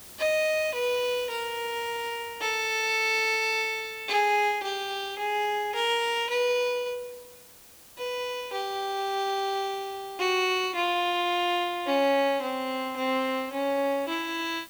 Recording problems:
hiss; slope -2 dB per octave, SNR 20 dB

